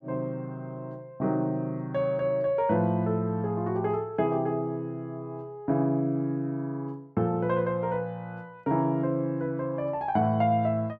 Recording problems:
none

